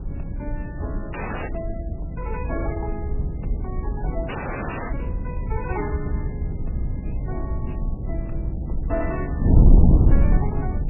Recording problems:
codec artefacts; MP3, log-spectral distance 3 dB, nothing above 2.5 kHz
wind noise; below 120 Hz, SNR -10 dB
audio freezing; at 1 s and at 4.5 s for 0.5 s

